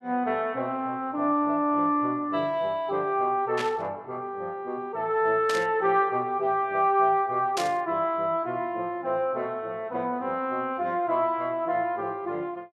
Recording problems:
static burst; at 3.5 s, at 5.5 s and at 7.5 s; peak -1 dB vs average level

